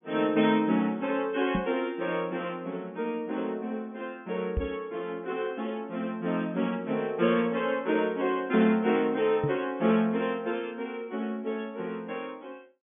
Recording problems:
treble missing; nothing above 3.5 kHz
knock on the microphone; at 1.5 s, at 4.5 s and at 9.5 s; peak +2 dB vs average level

